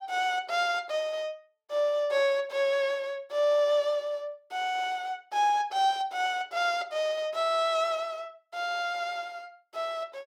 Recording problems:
none

